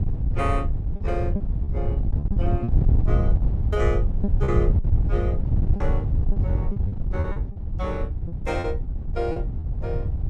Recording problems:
wind noise; below 100 Hz, SNR -6 dB
packet loss; 6% of the sound replaced, filled with repeated pitch periods

